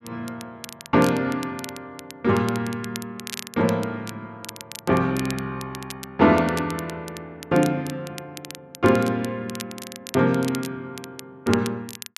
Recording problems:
crackle; vinyl, SNR 15 dB

